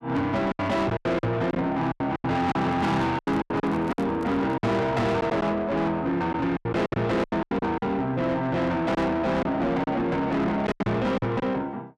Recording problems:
distortion; soft clipping, signal-to-distortion ratio 8 dB
packet loss; 12% of the sound replaced, filled with silence
microphone handling noise; from 2.5 to 4.5 s; peak -6 dB vs average level

